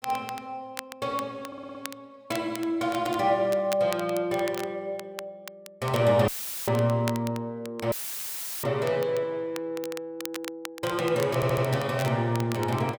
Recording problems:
crackling; vinyl, SNR 15 dB
stutter; at 1.5 s and at 11 s
audio cutting out; at 6.5 s and at 8 s for 0.5 s; filled with static

